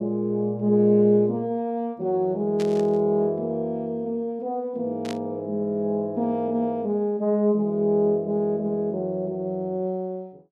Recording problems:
static burst; at 2.5 s and at 5 s; peak -8 dB vs average level

